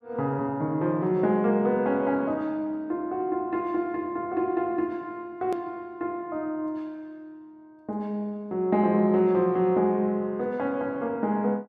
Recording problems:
click at an edit; at 5.5 s

